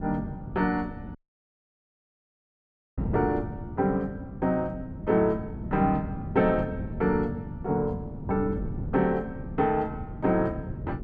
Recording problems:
wind noise; below 220 Hz, SNR 8 dB
audio cutting out; at 1 s for 2 s

